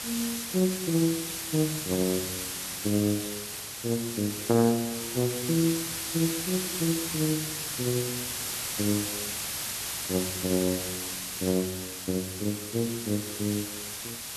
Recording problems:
background hiss; slope +1 dB per octave, SNR 3 dB

